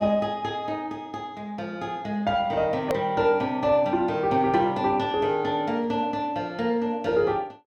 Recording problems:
hard cut with a click; at 3 s

